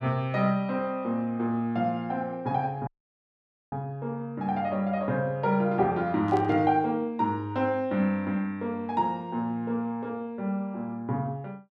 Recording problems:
audio cutting out; at 3 s for 1 s
burst of static; at 6.5 s; peak -13 dB vs average level

